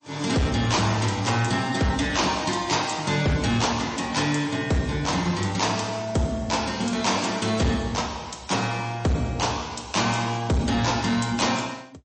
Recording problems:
lossy codec; MP3, log-spectral distance 6 dB, nothing above 8.2 kHz
distortion; hard clipping, signal-to-distortion ratio 11 dB

